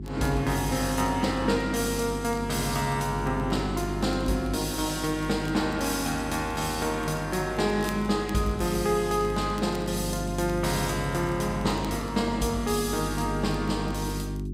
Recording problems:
hum; 50 Hz, harmonics up to 400 Hz, SNR 7 dB
crackling; vinyl, SNR 25 dB

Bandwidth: 15.5 kHz